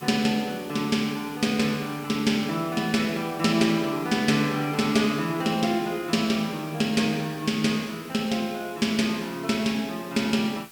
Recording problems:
hiss; slope -1 dB per octave, SNR 21 dB

